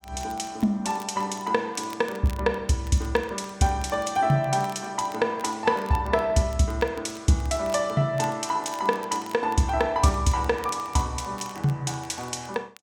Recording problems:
crackling; vinyl, SNR 23 dB

